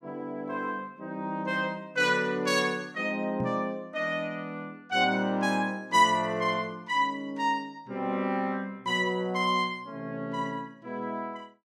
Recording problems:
microphone bump; at 3.5 s; peak -2 dB vs average level

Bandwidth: 15 kHz